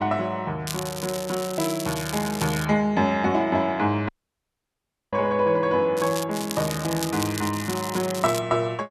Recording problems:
crackling; from 0.5 to 2.5 s, at 6 s and from 6.5 to 8.5 s; loose cable, SNR 9 dB
dropout; at 4 s for 1 s

